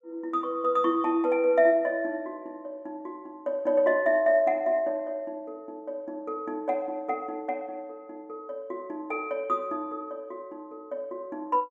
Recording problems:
none

